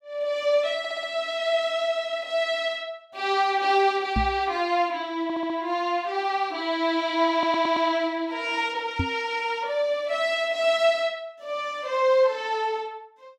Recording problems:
audio stuttering; at 1 s, at 5 s and at 7.5 s
microphone thump; at 4 s and at 9 s; peak +2 dB vs average level

